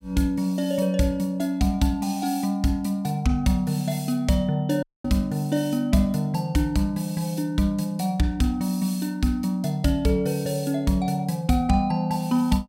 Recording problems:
dropout; at 5 s

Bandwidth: 16 kHz